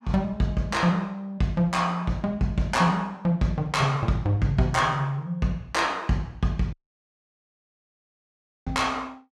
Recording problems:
dropout; at 6.5 s for 2 s

